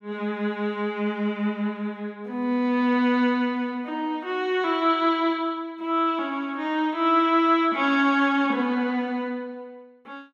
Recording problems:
none

